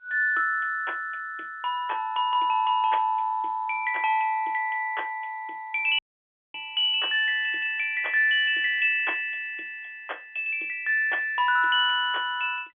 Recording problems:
phone line; 260 Hz to 3.4 kHz, G.711
dropout; at 6 s for 0.5 s

